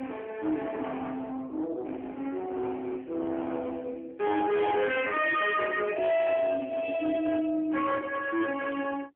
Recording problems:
phone line; 280 Hz to 2.5 kHz, AMR-NB
distorted audio; soft clipping, signal-to-distortion ratio 11 dB

